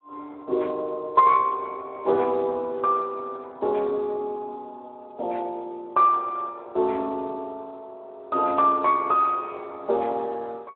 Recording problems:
phone line; 320 Hz to 3.6 kHz, Speex

